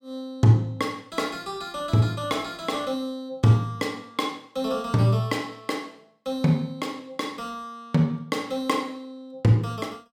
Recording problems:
none

